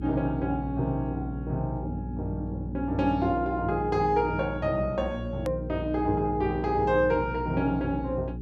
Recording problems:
hum; 60 Hz, harmonics up to 420 Hz, SNR 8 dB
edit click; at 5.5 s

